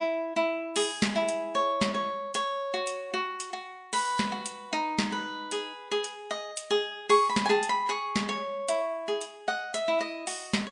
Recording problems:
lossy codec; MP3, log-spectral distance 3 dB, nothing above 9.5 kHz

